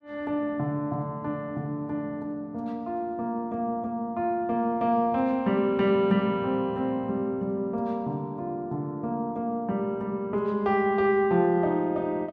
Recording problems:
none

